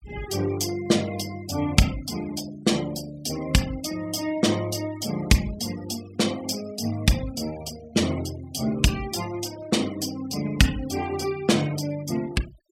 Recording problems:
denoising artefacts; signal-to-artefact ratio 17 dB

